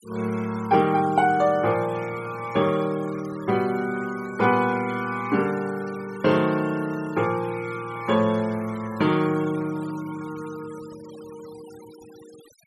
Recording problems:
denoising artefacts; signal-to-artefact ratio 21 dB

